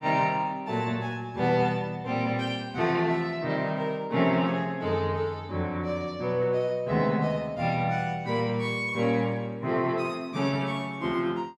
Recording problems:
none

